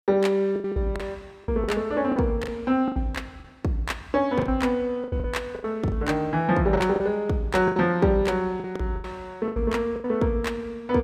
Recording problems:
lost packets; 12% of the sound replaced, filled with the last packet

